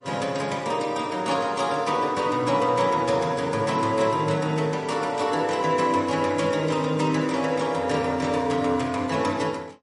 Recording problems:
codec artefacts; MP3, log-spectral distance 3 dB, nothing above 10.4 kHz

